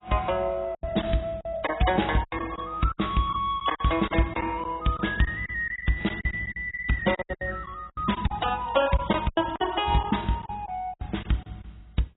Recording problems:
lossy compression; AAC, log-spectral distance 4 dB, nothing above 3.8 kHz
lost packets; 13% of the sound replaced, filled with silence

